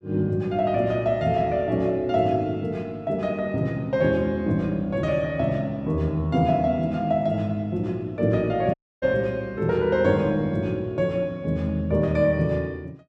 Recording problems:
audio cutting out; at 8.5 s

